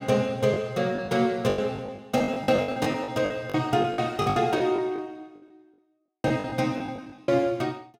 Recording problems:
packet loss; 16% of the sound replaced, filled with the last packet

